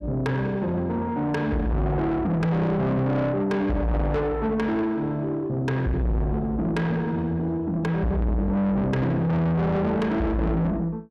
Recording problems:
distorted audio; soft clipping, signal-to-distortion ratio 7 dB

